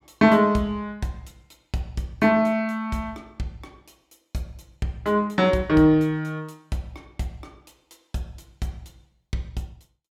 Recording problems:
none

